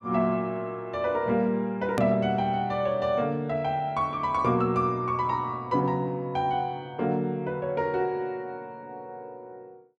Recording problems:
edit click; at 2 s

